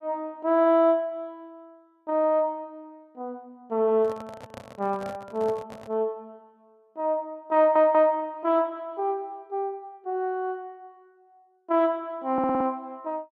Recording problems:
microphone handling noise; from 4 to 6 s; peak -10 dB vs average level
stutter; at 7.5 s and at 12 s

